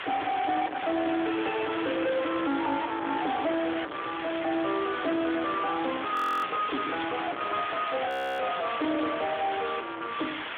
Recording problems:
phone line; 260 Hz to 3.5 kHz, Speex
distortion; soft clipping, signal-to-distortion ratio 6 dB
hiss; SNR 6 dB
audio freezing; at 6 s and at 8 s

